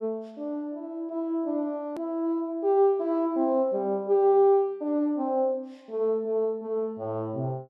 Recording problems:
hard cut with a click; at 2 s

